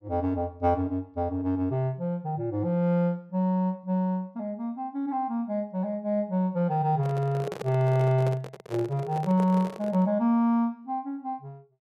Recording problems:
microphone handling noise; from 7 to 10 s; peak -4 dB vs average level

